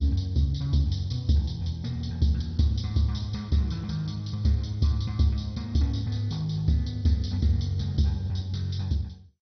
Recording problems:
codec artefacts; MP2, log-spectral distance 3 dB, nothing above 6 kHz

